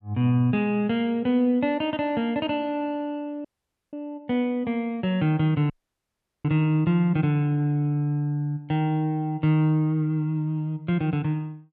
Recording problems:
dropout; at 3.5 s and at 5.5 s for 0.5 s

